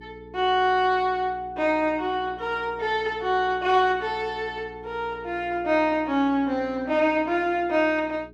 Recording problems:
hum; 60 Hz, harmonics up to 420 Hz, SNR 22 dB

